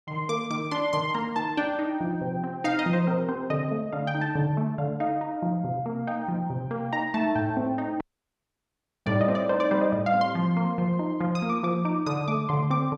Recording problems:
dropout; at 8 s for 1 s

